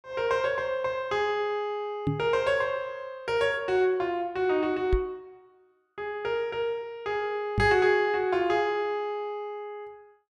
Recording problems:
microphone bump; at 2 s, at 5 s and at 7.5 s; peak +4 dB vs average level

